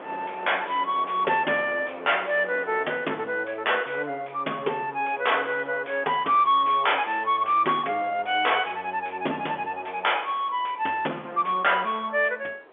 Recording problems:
phone line; 300 Hz to 3.5 kHz, G.711
distorted audio; soft clipping, signal-to-distortion ratio 9 dB
wind on the microphone; below 1.3 kHz, SNR 20 dB

